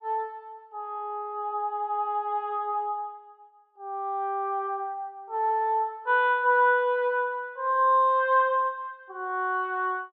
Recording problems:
none

